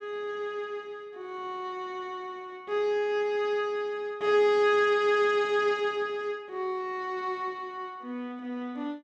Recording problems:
none

